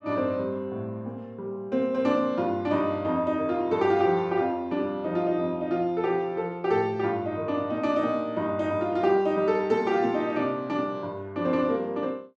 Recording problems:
none

